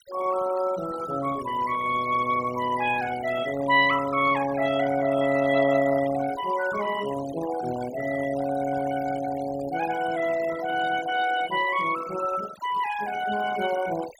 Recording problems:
denoising artefacts; signal-to-artefact ratio 14 dB

